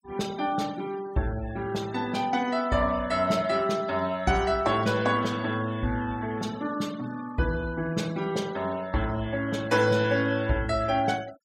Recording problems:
noise reduction artefacts; signal-to-artefact ratio 21 dB

